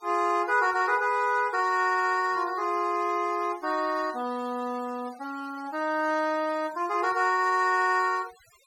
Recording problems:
noise reduction artefacts; signal-to-artefact ratio 23 dB

